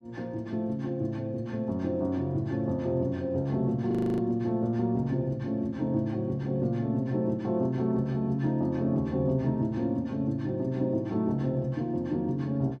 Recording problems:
audio freezing; at 4 s

